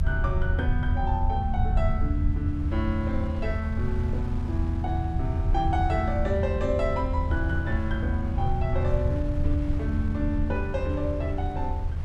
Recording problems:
rumble; below 82 Hz, SNR -2 dB
wind noise; below 800 Hz, SNR 15 dB

